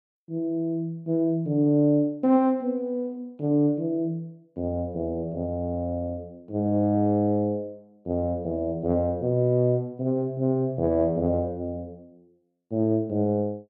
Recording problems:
none

